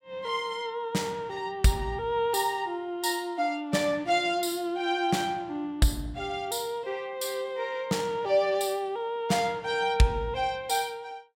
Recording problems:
none

